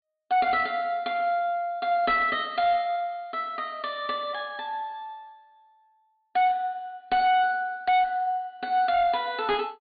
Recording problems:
treble missing; nothing above 4.5 kHz
distorted audio; hard clipping, uneven, signal-to-distortion ratio 12 dB

